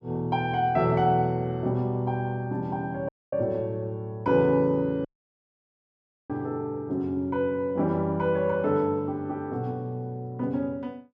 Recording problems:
dropout; at 3 s and at 5 s for 1.5 s

